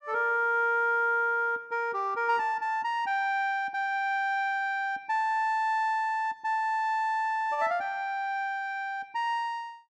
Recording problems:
none

